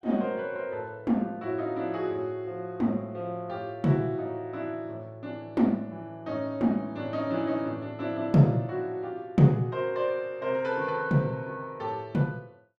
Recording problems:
none

